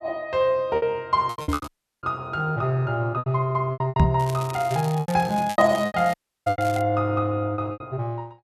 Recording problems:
packet loss; 13% of the sound replaced, filled with repeated pitch periods
crackling; at 1.5 s and from 4 to 7 s; loose cable, SNR 18 dB
microphone thump; at 1.5 s and at 4 s; peak +9 dB vs average level
audio cutting out; at 1.5 s and at 6 s

